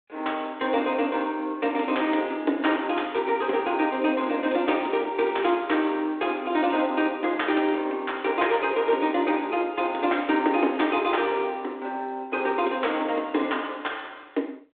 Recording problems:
phone line; 240 Hz to 3.6 kHz, G.726

